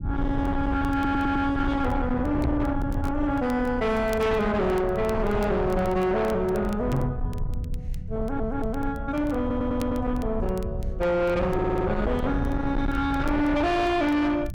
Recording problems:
distorted audio; soft clipping, signal-to-distortion ratio 8 dB
rumble; below 150 Hz, SNR 7 dB
crackling; vinyl, SNR 27 dB
stutter; 4 times, first at 1 s
microphone bump; at 2.5 s and at 7 s; peak +4 dB vs average level

